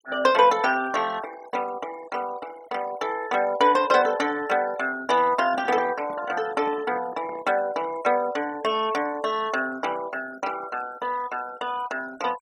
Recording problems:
denoising artefacts; signal-to-artefact ratio 18 dB
microphone handling noise; from 5.5 to 7.5 s; peak -13 dB vs average level

